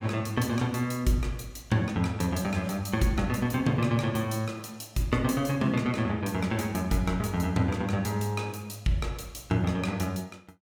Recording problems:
none

